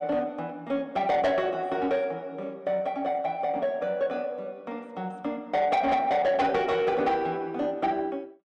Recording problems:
distorted audio; soft clipping, signal-to-distortion ratio 11 dB

